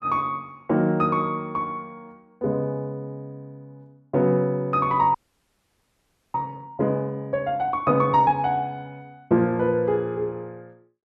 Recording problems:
audio freezing; at 5 s for 1 s

